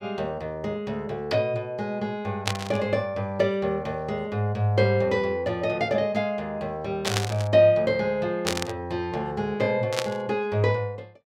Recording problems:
burst of static; 4 times, first at 2.5 s; peak +4 dB vs average level

